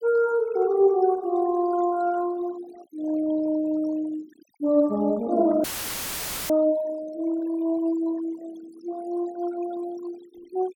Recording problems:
noise reduction artefacts; signal-to-artefact ratio 20 dB
dropout; at 5.5 s for 1 s; filled with static

